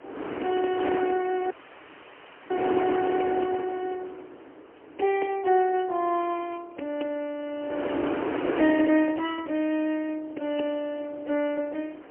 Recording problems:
phone line; 240 Hz to 3.1 kHz, AMR-NB, then MP3
wind noise; below 780 Hz, SNR 4 dB
dropout; at 1.5 s for 1 s

